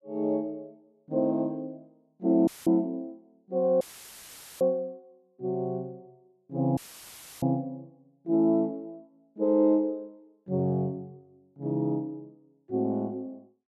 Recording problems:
audio cutting out; at 2.5 s, at 4 s for 1 s and at 7 s for 0.5 s; filled with static

